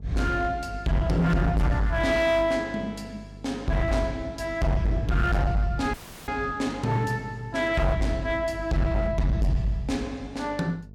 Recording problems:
distortion; hard clipping, signal-to-distortion ratio 8 dB
hum; 50 Hz, harmonics up to 500 Hz, SNR 19 dB
audio cutting out; at 6 s

